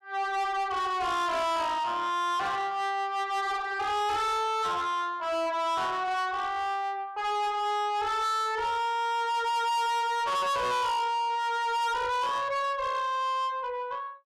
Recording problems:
distortion; soft clipping, signal-to-distortion ratio 8 dB

